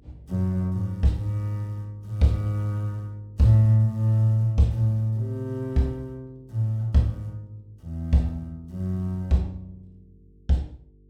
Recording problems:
mains hum; 50 Hz, harmonics up to 450 Hz, SNR 31 dB

